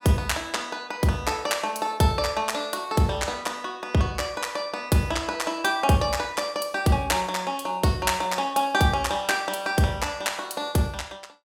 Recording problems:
none

